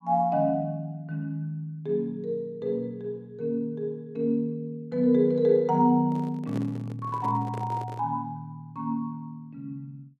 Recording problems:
handling noise; from 6 to 8 s; peak -6 dB vs average level

